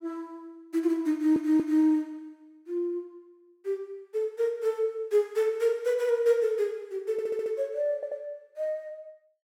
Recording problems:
stutter; at 1 s, at 7 s and at 8 s

